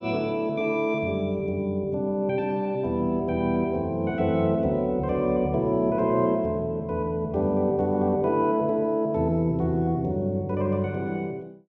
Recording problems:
none

